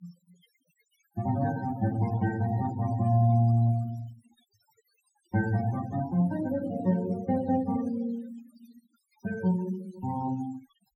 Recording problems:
noise reduction artefacts; signal-to-artefact ratio 18 dB

